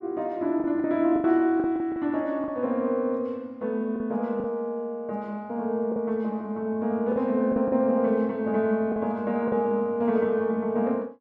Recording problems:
lost packets; 6% of the sound replaced, filled with the last packet

